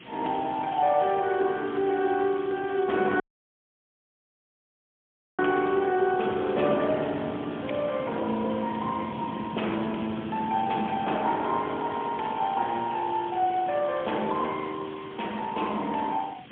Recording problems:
telephone audio; 240 Hz to 3.4 kHz, AMR-NB, then MP3
hiss; SNR 18 dB
wind noise; below 380 Hz, SNR 15 dB
audio cutting out; at 3 s for 2 s

